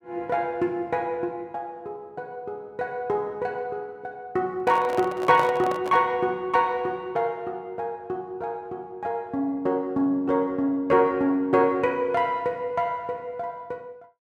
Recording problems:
handling noise; from 4.5 to 6 s; peak -3 dB vs average level

